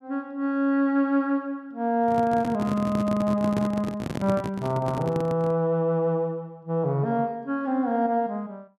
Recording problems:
microphone handling noise; from 2 to 5.5 s; peak 0 dB vs average level

